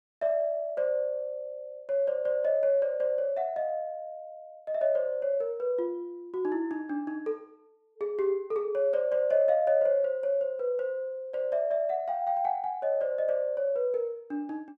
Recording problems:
none

